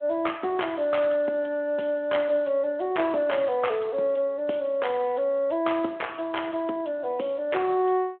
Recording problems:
telephone audio; 260 Hz to 3.4 kHz, Speex

